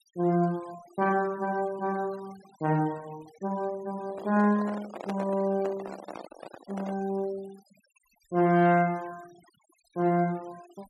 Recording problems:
denoising artefacts; signal-to-artefact ratio 23 dB
microphone handling noise; from 4 to 7 s; peak -4 dB vs average level

